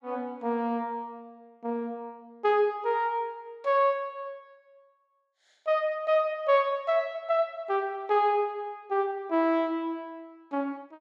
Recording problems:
none

